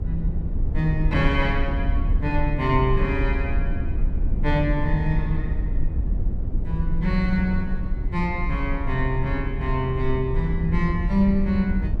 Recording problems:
rumble; below 72 Hz, SNR 2 dB
wind on the microphone; below 92 Hz, SNR 16 dB

